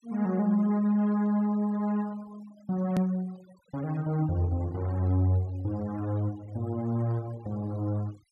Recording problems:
noise reduction artefacts; signal-to-artefact ratio 24 dB
edit click; at 3 s

